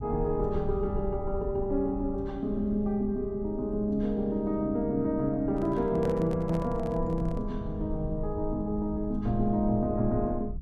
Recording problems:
rumble; below 82 Hz, SNR 10 dB
handling noise; from 5.5 to 7.5 s; peak -6 dB vs average level

